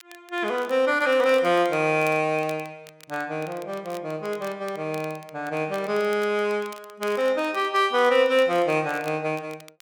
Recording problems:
crackle; vinyl, SNR 24 dB

